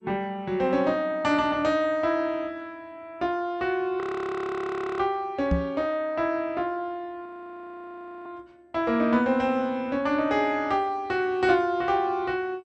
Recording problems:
lossy compression; MP2, log-spectral distance 2 dB
frozen audio; at 4 s for 1 s and at 7.5 s for 1 s
microphone thump; at 5.5 s; peak +4 dB vs average level

